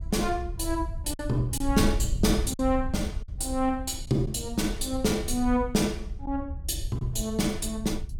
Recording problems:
wind on the microphone; below 74 Hz, SNR 7 dB
packet loss; 2% of the sound replaced, filled with silence

